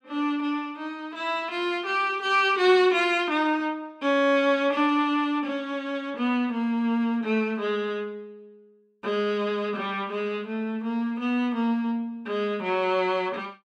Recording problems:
none

